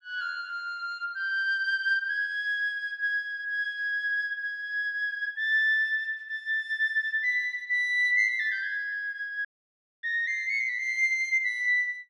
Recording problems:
audio cutting out; at 9.5 s for 0.5 s

